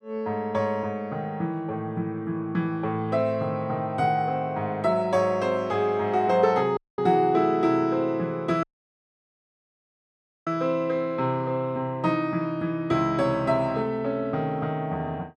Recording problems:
dropout; at 7 s and at 8.5 s for 2 s

